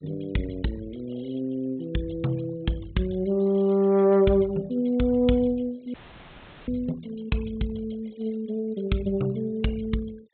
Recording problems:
low-pass filter; nothing above 4 kHz
denoising artefacts; signal-to-artefact ratio 25 dB
audio cutting out; at 6 s for 0.5 s; filled with static

